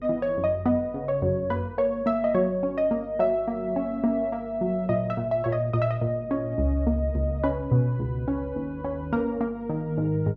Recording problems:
hum; 50 Hz, harmonics up to 500 Hz, SNR 23 dB

